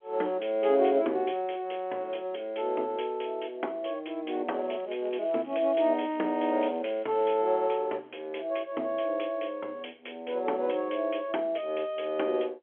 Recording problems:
telephone audio; 240 Hz to 3.3 kHz, G.711
crackling; from 4.5 to 7.5 s; loose cable, SNR 27 dB

